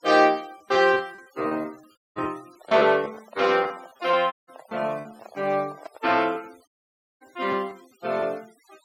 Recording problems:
noise reduction artefacts; signal-to-artefact ratio 27 dB
lost packets; 9% of the sound replaced, filled with repeated pitch periods
audio cutting out; at 2 s, at 4.5 s and at 6.5 s for 0.5 s
handling noise; from 2.5 to 6 s; peak -10 dB vs average level

